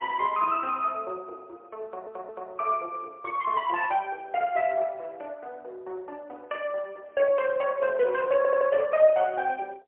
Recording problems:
telephone audio; 340 Hz to 3.1 kHz, AMR-NB, then MP3
stutter; at 2 s and at 8.5 s

